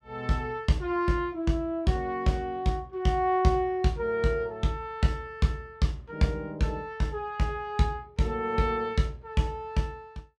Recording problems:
none

